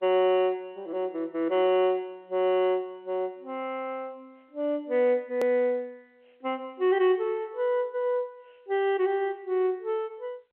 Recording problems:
phone line; 300 Hz to 3.5 kHz, G.711
edit click; at 5.5 s

